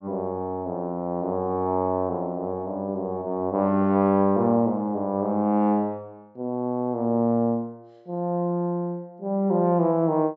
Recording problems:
low-pass filter; nothing above 8 kHz

